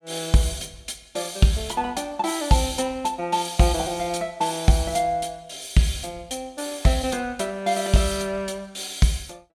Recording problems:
none

